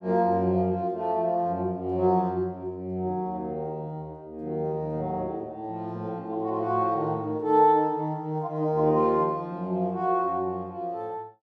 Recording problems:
none

